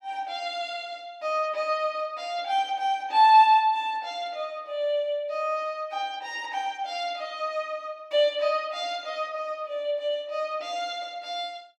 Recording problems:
none

